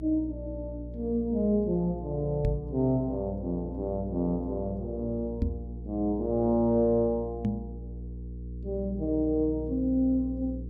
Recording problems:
hum; 60 Hz, harmonics up to 480 Hz, SNR 11 dB
microphone thump; at 2.5 s, at 5.5 s and at 7.5 s; peak +4 dB vs average level

